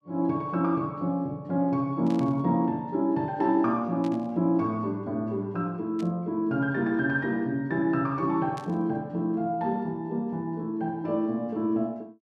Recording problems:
burst of static; 4 times, first at 2 s; peak -13 dB vs average level

